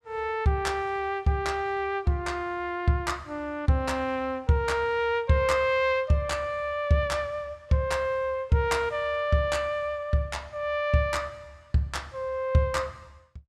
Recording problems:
none

